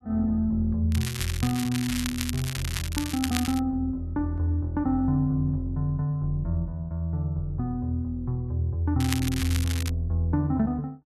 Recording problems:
crackling; from 1 to 3.5 s and at 9 s; loose cable, SNR 7 dB

